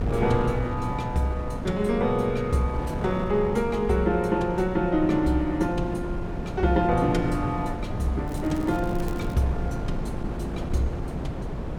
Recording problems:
wind noise; below 300 Hz, SNR 6 dB
crackle; from 8.5 to 9.5 s; loose cable, SNR 24 dB

